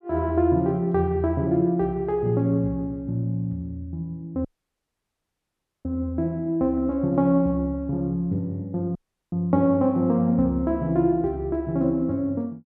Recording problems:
dropout; at 4.5 s for 1.5 s and at 9 s

